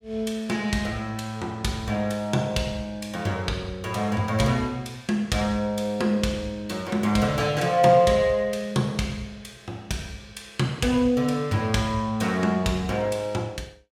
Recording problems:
none

